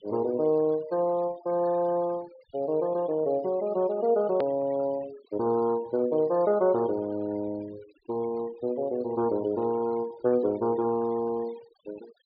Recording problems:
treble missing; nothing above 4.9 kHz
denoising artefacts; signal-to-artefact ratio 23 dB
edit click; at 4.5 s

